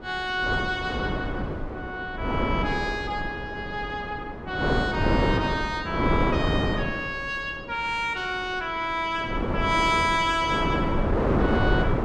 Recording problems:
wind noise; below 540 Hz, SNR 0 dB

